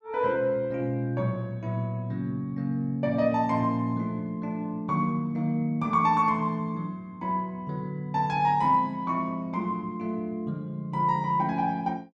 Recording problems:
none

